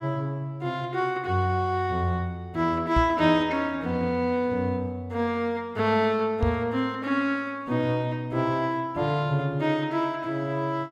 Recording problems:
microphone bump; at 3 s and at 6.5 s; peak +3 dB vs average level

